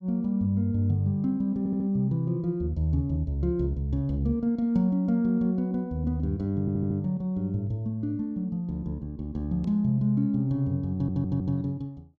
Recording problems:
audio stuttering; at 1.5 s, at 6.5 s and at 11 s

